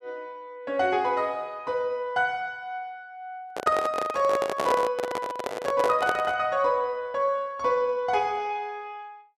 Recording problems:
handling noise; from 3.5 to 6.5 s; peak +3 dB vs average level

